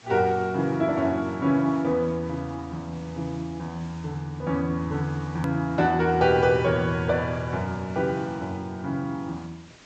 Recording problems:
treble cut off; nothing above 8 kHz
background hiss; slope -2 dB per octave, SNR 25 dB
click at an edit; at 5.5 s

